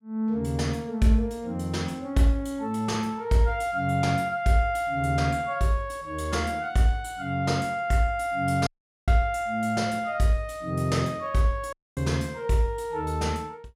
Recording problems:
dropout; at 8.5 s and at 12 s

